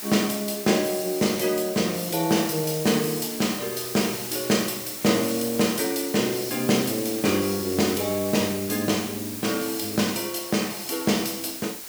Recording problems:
hiss; slope 0 dB per octave, SNR 8 dB

